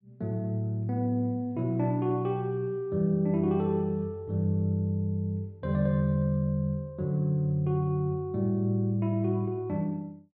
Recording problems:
none

